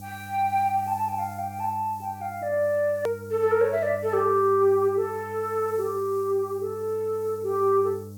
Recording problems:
hum; 50 Hz, harmonics up to 600 Hz, SNR 18 dB
hiss; SNR 25 dB
hard cut with a click; at 3 s

